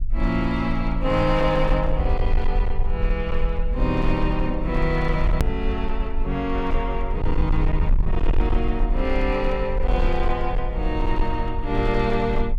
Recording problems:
distortion; hard clipping, signal-to-distortion ratio 12 dB
rumble; below 48 Hz, SNR 2 dB
click at an edit; at 5.5 s

